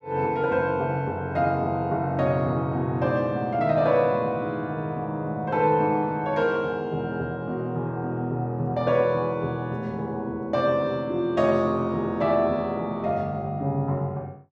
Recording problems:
none

